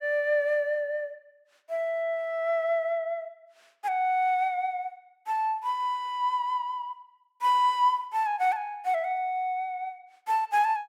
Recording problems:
none

